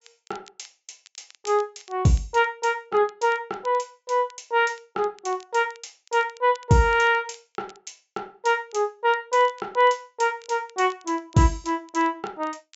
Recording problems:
treble missing; nothing above 8 kHz
crackling; vinyl, SNR 29 dB

